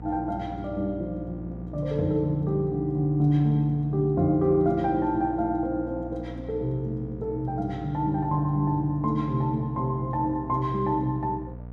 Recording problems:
hum; 60 Hz, harmonics up to 720 Hz, SNR 14 dB

